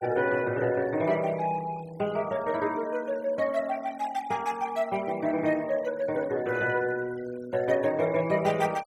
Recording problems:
noise reduction artefacts; signal-to-artefact ratio 19 dB

